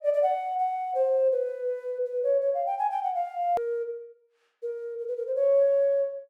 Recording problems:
click at an edit; at 3.5 s

